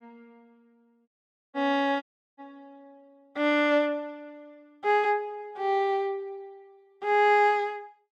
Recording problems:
audio cutting out; at 1 s and at 2 s

